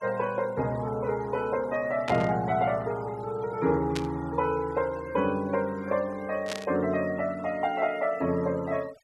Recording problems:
denoising artefacts; signal-to-artefact ratio 22 dB
burst of static; at 2 s, at 4 s and at 6.5 s; peak -1 dB vs average level

